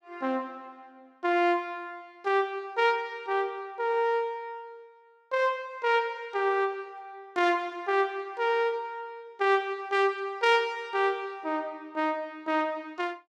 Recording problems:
none

